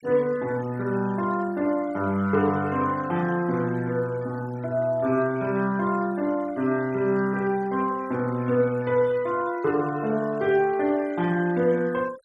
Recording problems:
denoising artefacts; signal-to-artefact ratio 23 dB

